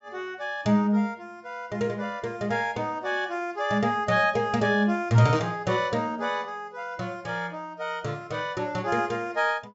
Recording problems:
treble missing; nothing above 8 kHz

